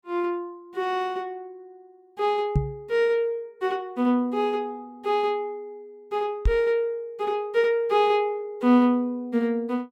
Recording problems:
microphone thump; at 2.5 s and at 6.5 s; peak +5 dB vs average level

